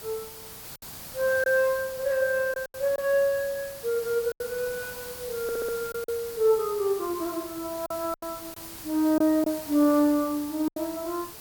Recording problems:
hiss; slope -2 dB per octave, SNR 13 dB
lost packets; 5% of the sound replaced, filled with silence
stutter; at 5.5 s

